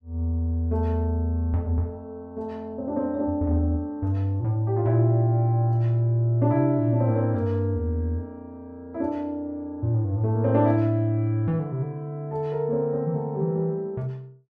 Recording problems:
none

